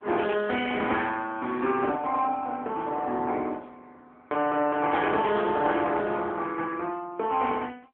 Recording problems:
telephone audio; 260 Hz to 3.4 kHz, AMR-NB

